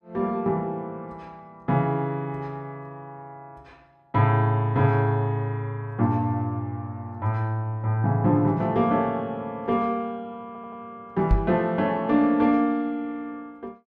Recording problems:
stutter; at 10 s
microphone bump; at 11 s; peak +6 dB vs average level

